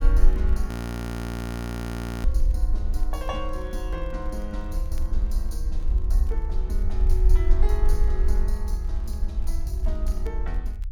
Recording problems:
rumble; below 50 Hz, strongest tone 20 Hz, SNR -9 dB
crackle; vinyl, SNR 25 dB
audio freezing; at 0.5 s for 1.5 s

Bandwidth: 18 kHz